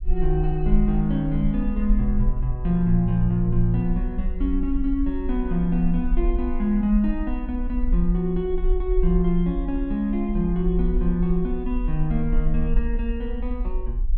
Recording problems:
rumble; below 44 Hz, SNR 4 dB

